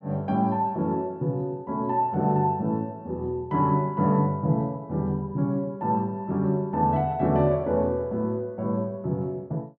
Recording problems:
none

